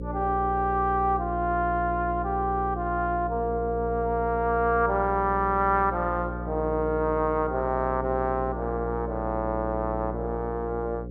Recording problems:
hum; 60 Hz, harmonics up to 540 Hz, SNR 8 dB

